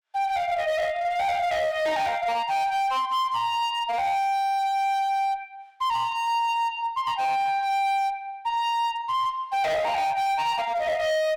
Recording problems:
distorted audio; hard clipping, uneven, signal-to-distortion ratio 8 dB

